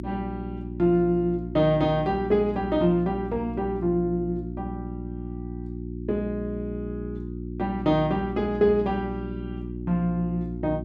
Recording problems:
hum; 60 Hz, harmonics up to 360 Hz, SNR 9 dB

